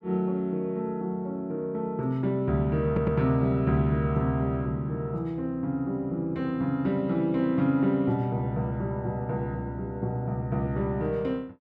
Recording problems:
audio stuttering; at 3 s

